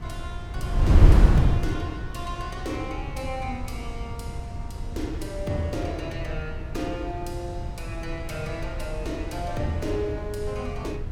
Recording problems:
wind on the microphone; below 98 Hz, SNR -4 dB

